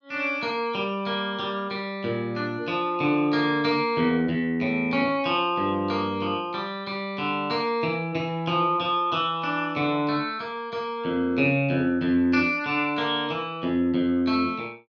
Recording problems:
none

